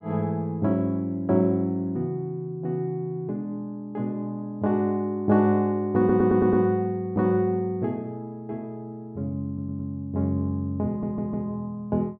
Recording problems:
audio stuttering; at 6 s, at 9.5 s and at 11 s

